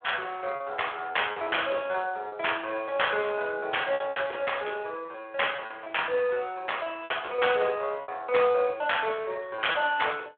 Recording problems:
phone line; 370 Hz to 3.5 kHz, Speex
lost packets; 8% of the sound replaced, filled with repeated pitch periods

